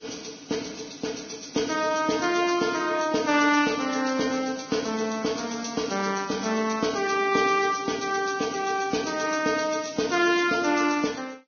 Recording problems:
codec artefacts; Vorbis, log-spectral distance 7 dB, nothing above 6.3 kHz

